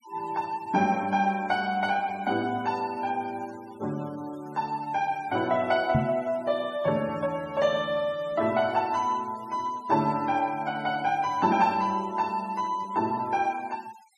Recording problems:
noise reduction artefacts; signal-to-artefact ratio 22 dB
microphone bump; at 6 s; peak +6 dB vs average level

